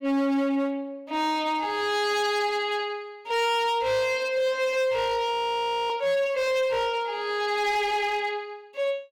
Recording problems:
distorted audio; hard clipping, signal-to-distortion ratio 11 dB
audio freezing; at 5.5 s for 0.5 s

